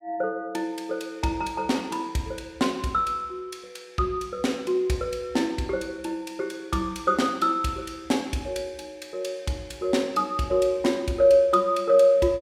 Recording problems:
none

